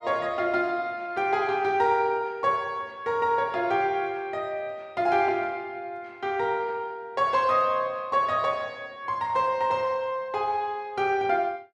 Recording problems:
none

